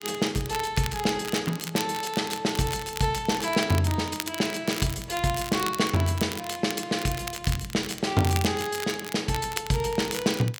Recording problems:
crackle; vinyl, SNR 10 dB

